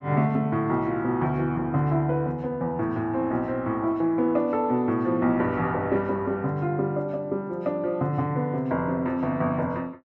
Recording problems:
none

